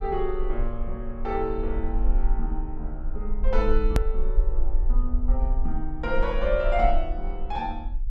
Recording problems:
rumble; below 40 Hz, strongest tone 18 Hz, SNR -1 dB
edit click; at 4 s

